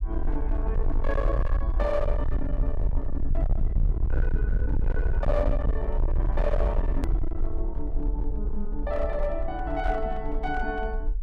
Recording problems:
distortion; hard clipping, signal-to-distortion ratio 7 dB
low-frequency rumble; below 54 Hz, SNR -3 dB
hard cut with a click; at 7 s

